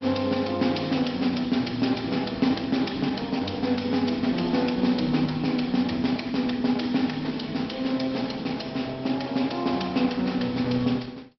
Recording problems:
treble missing; nothing above 5.5 kHz
lossy compression; Opus, log-spectral distance 5 dB

